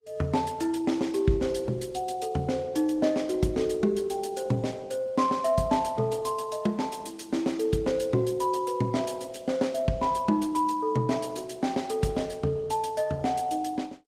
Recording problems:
lossy codec; Opus, log-spectral distance 3 dB, nothing above 18.3 kHz

